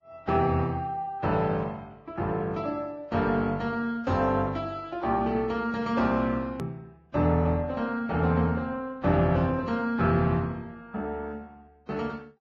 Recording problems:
lossy codec; Vorbis, log-spectral distance 2 dB, nothing above 13.1 kHz
hard cut with a click; at 6.5 s

